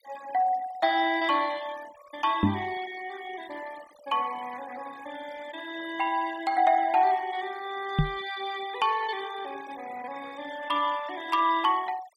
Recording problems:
noise reduction artefacts; signal-to-artefact ratio 17 dB
knock on the microphone; at 2.5 s and at 8 s; peak +8 dB vs average level

